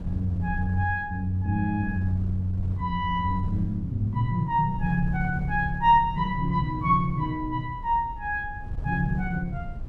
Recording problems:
wind noise; below 100 Hz, SNR 10 dB

